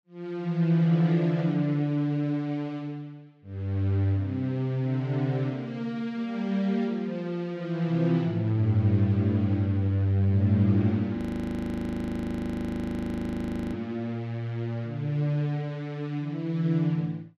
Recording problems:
audio freezing; at 11 s for 2.5 s

